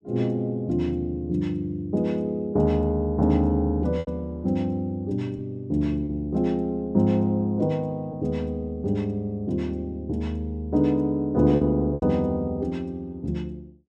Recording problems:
packet loss; 2% of the sound replaced, filled with repeated pitch periods

